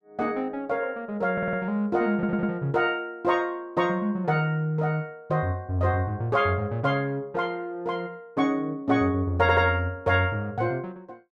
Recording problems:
stutter; at 1.5 s, at 2 s and at 9.5 s

